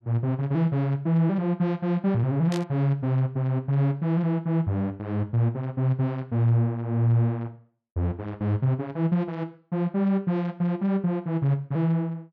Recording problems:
static burst; at 2.5 s; peak -7 dB vs average level

